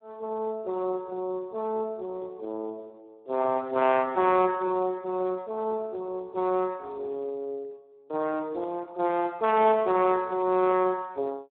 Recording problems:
telephone audio; 280 Hz to 3.1 kHz, Speex

